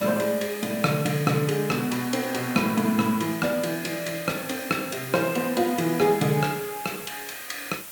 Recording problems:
hiss; slope -1 dB per octave, SNR 12 dB

